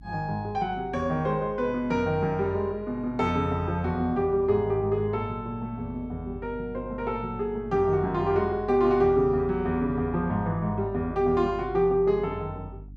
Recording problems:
electrical hum; 50 Hz, harmonics up to 300 Hz, SNR 18 dB

